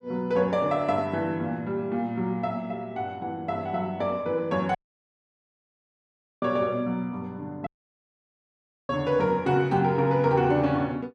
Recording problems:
audio cutting out; at 5 s for 1.5 s and at 7.5 s for 1 s

